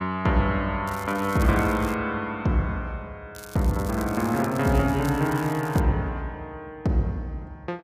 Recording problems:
crackling; from 1 to 2 s and from 3.5 to 6 s; loose cable, SNR 18 dB

